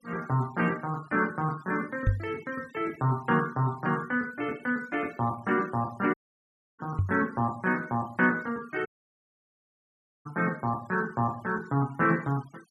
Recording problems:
noise reduction artefacts; signal-to-artefact ratio 23 dB
microphone thump; at 2 s and at 7 s; peak +7 dB vs average level
dropout; at 6 s for 0.5 s and at 9 s for 1.5 s

